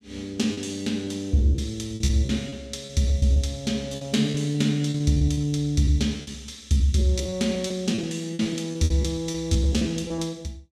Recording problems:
packet loss; 14% of the sound replaced, filled with repeated pitch periods

